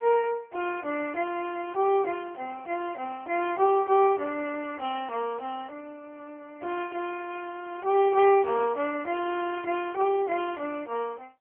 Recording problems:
phone line; 300 Hz to 3.2 kHz, AMR-NB

